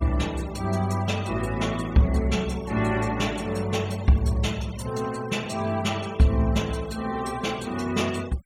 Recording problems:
denoising artefacts; signal-to-artefact ratio 18 dB

